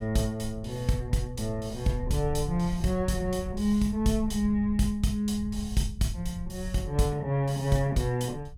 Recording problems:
low-frequency rumble; below 86 Hz, SNR 12 dB

